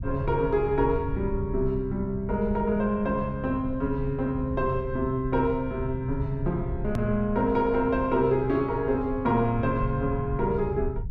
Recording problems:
rumble; below 110 Hz, SNR 9 dB
click at an edit; at 7 s

